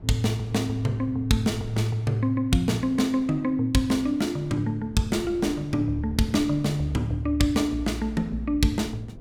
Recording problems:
wind noise; below 230 Hz, SNR 20 dB

